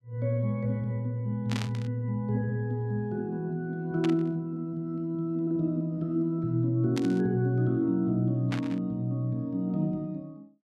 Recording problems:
static burst; 4 times, first at 1.5 s; peak -3 dB vs average level

